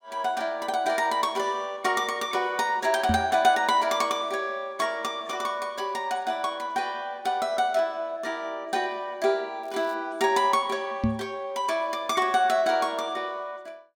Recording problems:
microphone bump; at 3 s and at 11 s; peak +5 dB vs average level
crackling; at 9.5 s; loose cable, SNR 29 dB

